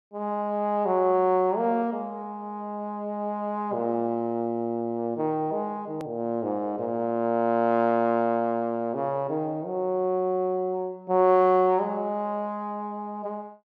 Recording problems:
edit click; at 6 s

